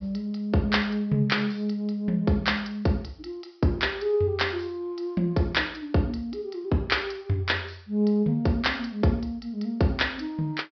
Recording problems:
treble missing; nothing above 5.5 kHz

